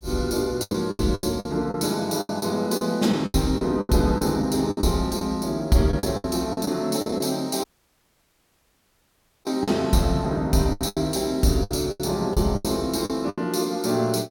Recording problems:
packet loss; 14% of the sound replaced, filled with the last packet
dropout; at 7.5 s for 2 s

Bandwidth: 17 kHz